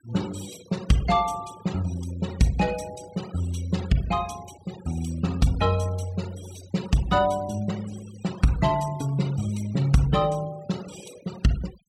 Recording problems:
denoising artefacts; signal-to-artefact ratio 18 dB

